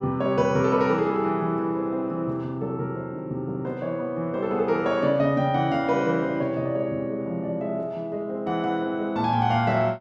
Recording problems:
none

